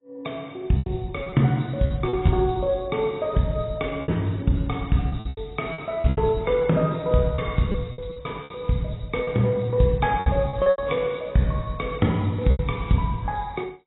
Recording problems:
codec artefacts; AAC, log-spectral distance 4 dB, nothing above 3.8 kHz
lost packets; 9% of the sound replaced, filled with repeated pitch periods

